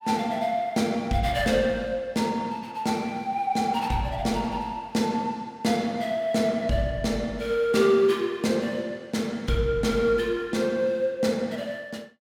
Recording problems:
none

